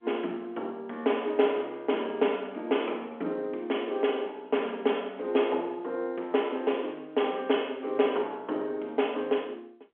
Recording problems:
phone line; 260 Hz to 3.4 kHz, G.711

